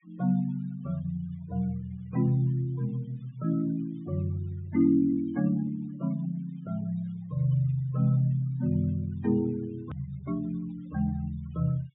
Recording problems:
treble missing; nothing above 4 kHz
denoising artefacts; signal-to-artefact ratio 25 dB
edit click; at 10 s

